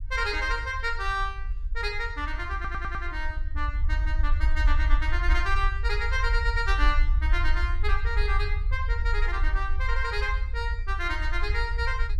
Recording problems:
rumble; below 56 Hz, strongest tone 20 Hz, SNR -1 dB
stutter; at 2.5 s

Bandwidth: 14.5 kHz